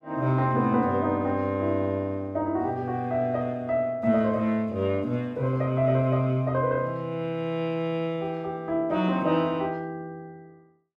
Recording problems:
none

